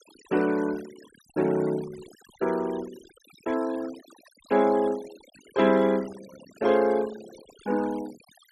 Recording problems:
denoising artefacts; signal-to-artefact ratio 20 dB

